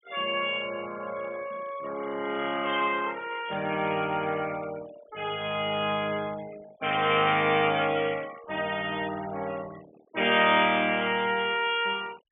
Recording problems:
treble cut off; nothing above 3.5 kHz
denoising artefacts; signal-to-artefact ratio 19 dB

